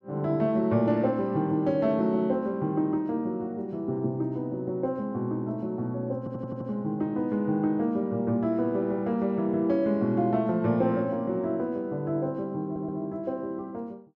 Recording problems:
stutter; at 6 s and at 13 s

